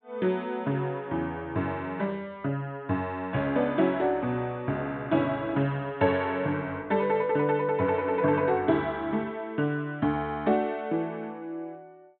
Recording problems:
treble missing; nothing above 4 kHz

